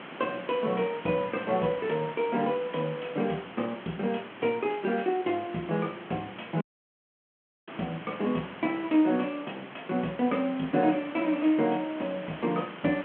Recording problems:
phone line; 170 Hz to 3.5 kHz, G.726
background hiss; SNR 13 dB
audio cutting out; at 6.5 s for 1 s

